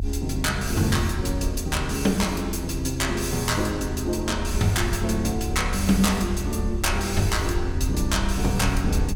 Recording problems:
rumble; below 80 Hz, SNR 6 dB

